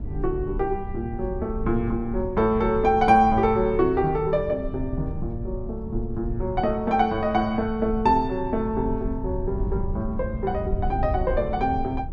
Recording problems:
low-frequency rumble; below 96 Hz, SNR 9 dB

